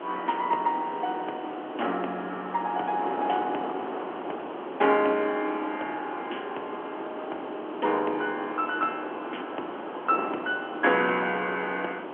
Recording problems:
phone line; 220 Hz to 3.2 kHz, G.711
background hiss; SNR 24 dB
wind noise; below 980 Hz, SNR 7 dB

